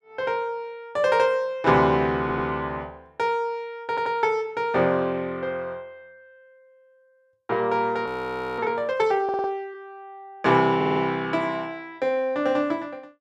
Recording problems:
stutter; 4 times, first at 2 s
audio freezing; at 8 s for 0.5 s

